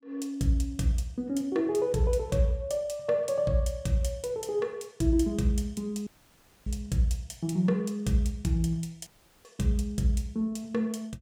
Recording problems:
audio cutting out; at 6 s for 0.5 s and at 9 s

